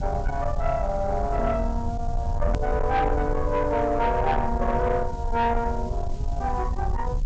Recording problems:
low-pass filter; nothing above 8 kHz
distorted audio; soft clipping, signal-to-distortion ratio 11 dB
hiss; SNR 27 dB
low-frequency rumble; below 84 Hz, SNR 4 dB
hard cut with a click; at 2.5 s

